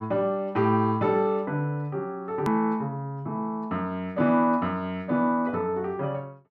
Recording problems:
click at an edit; at 2.5 s

